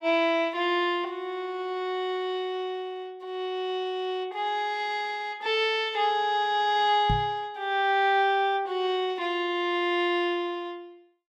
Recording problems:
microphone thump; at 7 s; peak +2 dB vs average level

